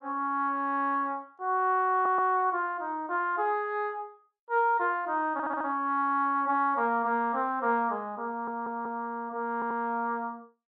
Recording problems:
audio stuttering; 4 times, first at 2 s

